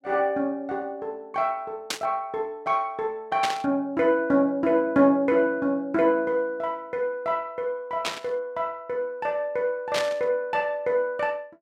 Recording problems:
static burst; 4 times, first at 2 s; peak +2 dB vs average level

